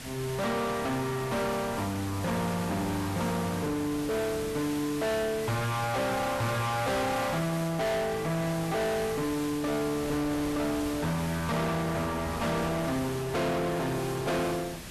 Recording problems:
distortion; soft clipping, signal-to-distortion ratio 5 dB
hiss; slope 0 dB per octave, SNR 12 dB
wind on the microphone; below 1.1 kHz, SNR 15 dB

